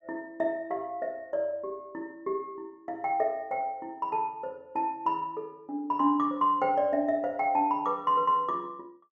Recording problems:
none

